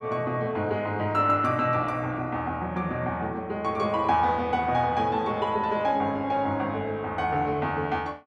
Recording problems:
none

